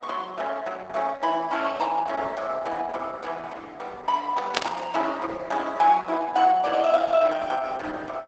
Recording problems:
lossy codec; Opus, log-spectral distance 4 dB, nothing above 7.8 kHz
static burst; at 4.5 s; peak +4 dB vs average level

